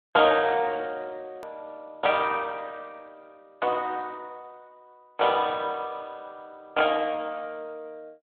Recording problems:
phone line; 280 Hz to 3.7 kHz, Speex
hard cut with a click; at 1.5 s

